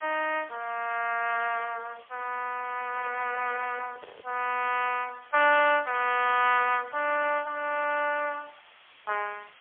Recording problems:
telephone audio; 340 Hz to 3.4 kHz, AMR-NB, then MP3
hiss; SNR 27 dB
microphone handling noise; from 3 to 4.5 s; peak -14 dB vs average level

